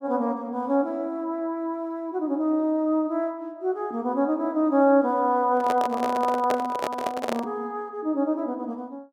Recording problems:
handling noise; from 5.5 to 7.5 s; peak +2 dB vs average level

